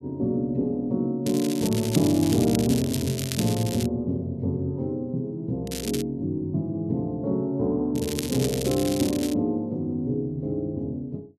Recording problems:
crackle; from 1.5 to 4 s, at 5.5 s and from 8 to 9.5 s; loose cable, SNR 8 dB

